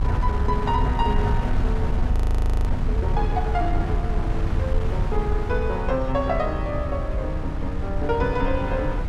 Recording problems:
wind noise; below 90 Hz, SNR -2 dB
audio freezing; at 2 s for 0.5 s

